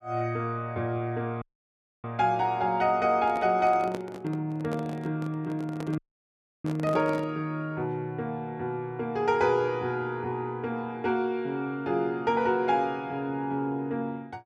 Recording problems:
audio cutting out; at 1.5 s for 0.5 s and at 6 s for 0.5 s
handling noise; from 3 to 7.5 s; peak -4 dB vs average level

